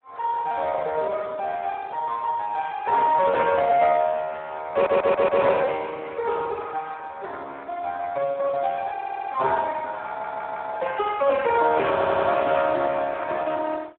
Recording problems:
telephone audio; 340 Hz to 2.1 kHz, Speex
stutter; 4 times, first at 4.5 s

